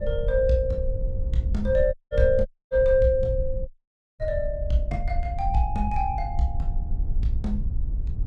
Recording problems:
wind noise; below 66 Hz, SNR 5 dB
audio cutting out; at 2 s, at 2.5 s and at 3.5 s for 0.5 s

